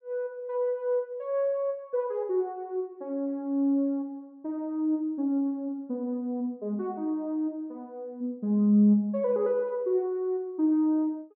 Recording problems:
none

